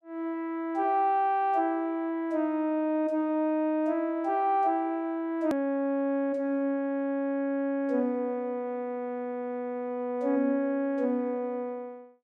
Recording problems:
edit click; at 5.5 s

